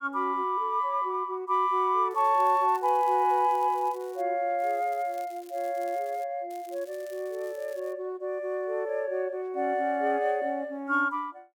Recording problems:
crackle; from 2 to 4 s, from 4.5 to 6 s and from 6.5 to 8 s; loose cable, SNR 26 dB

